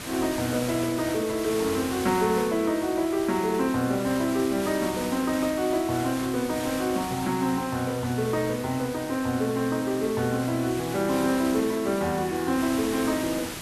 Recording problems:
background hiss; slope -2 dB per octave, SNR 10 dB

